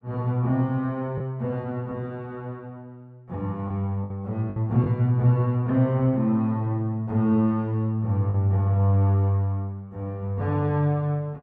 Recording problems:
lost packets; 2% of the sound replaced, filled with the last packet

